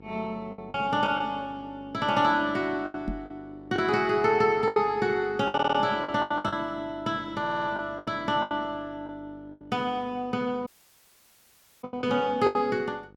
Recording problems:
mains hum; 50 Hz, harmonics up to 1.4 kHz, SNR 23 dB
packet loss; 10% of the sound replaced, filled with the last packet
microphone thump; at 3 s; peak -1 dB vs average level
audio stuttering; at 5.5 s and at 7.5 s
dropout; at 11 s for 1 s

